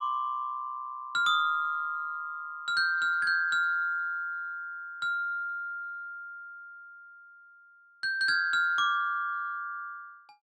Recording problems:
none

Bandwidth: 12 kHz